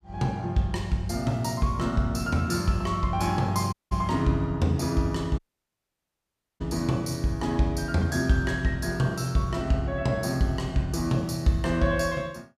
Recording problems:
audio cutting out; at 3.5 s and at 5.5 s for 1 s

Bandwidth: 15 kHz